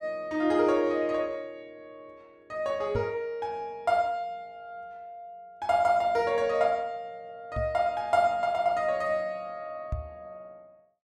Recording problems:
microphone thump; at 3 s, at 7.5 s and at 10 s; peak -1 dB vs average level

